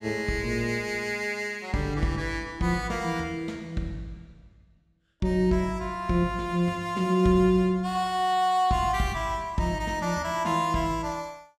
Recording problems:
none

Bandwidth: 15.5 kHz